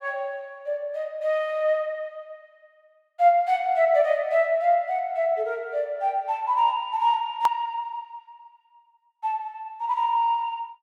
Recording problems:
click at an edit; at 7.5 s

